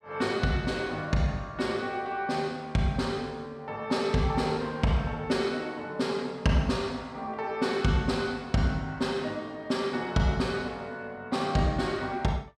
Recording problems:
none

